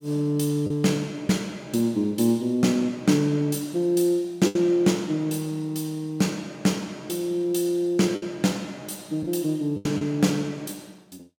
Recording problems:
lost packets; 3% of the sound replaced, filled with the last packet

